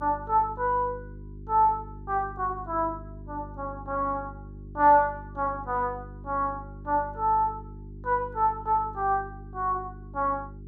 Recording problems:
hum; 50 Hz, harmonics up to 400 Hz, SNR 16 dB

